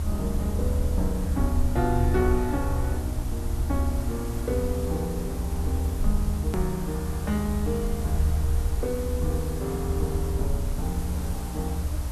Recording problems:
electrical hum; 60 Hz, harmonics up to 300 Hz, SNR 6 dB
background hiss; slope -4 dB per octave, SNR 10 dB
low-frequency rumble; below 78 Hz, SNR -1 dB
click at an edit; at 6.5 s

